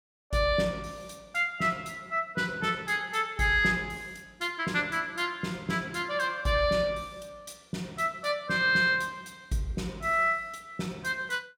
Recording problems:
none

